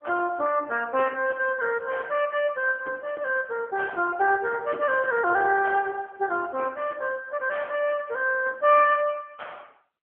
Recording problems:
phone line; 300 Hz to 3.3 kHz, AMR-NB

